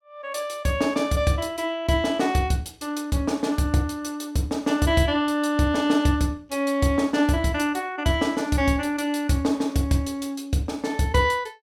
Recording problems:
none

